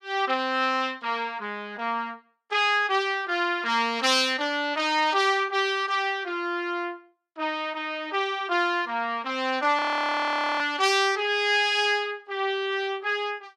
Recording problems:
audio freezing; at 10 s for 1 s

